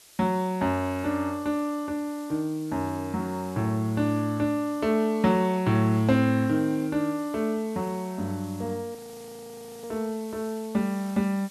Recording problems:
background hiss; SNR 22 dB
audio freezing; at 9 s for 1 s

